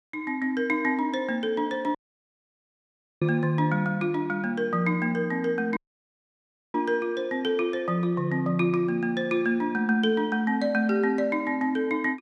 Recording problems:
dropout; at 2 s for 1.5 s and at 6 s for 1 s

